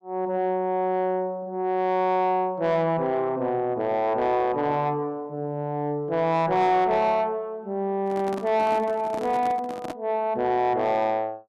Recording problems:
distorted audio; soft clipping, signal-to-distortion ratio 11 dB
handling noise; from 8 to 10 s; peak -5 dB vs average level

